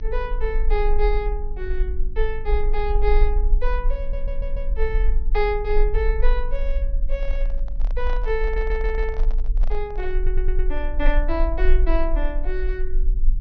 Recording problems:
treble missing; nothing above 6 kHz
hum; 50 Hz, harmonics up to 300 Hz, SNR 15 dB
low-frequency rumble; below 38 Hz, strongest tone 20 Hz, SNR -3 dB
audio stuttering; at 4 s, at 8.5 s and at 10 s
microphone handling noise; from 7 to 11 s; peak -8 dB vs average level

